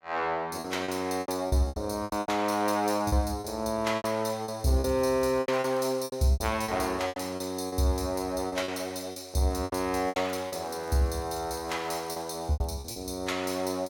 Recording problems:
lost packets; 12% of the sound replaced, filled with repeated pitch periods
crackling; from 4.5 to 6 s and from 10 to 13 s; loose cable, SNR 27 dB

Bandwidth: 17.5 kHz